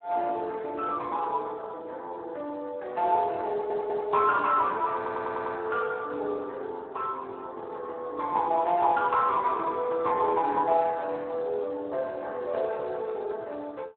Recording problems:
telephone audio; 320 Hz to 2.1 kHz, Speex
stutter; at 3.5 s and at 5 s

